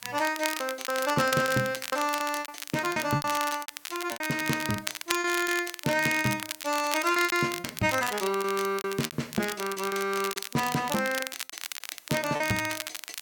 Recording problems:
background hiss; slope 0 dB per octave, SNR 26 dB
crackle; vinyl, SNR 7 dB
packet loss; 15% of the sound replaced, filled with repeated pitch periods

